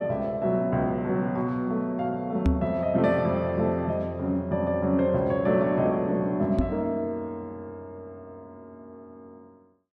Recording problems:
microphone bump; at 2.5 s and at 6.5 s; peak +6 dB vs average level

